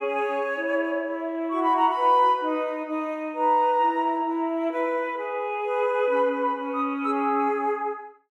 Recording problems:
none

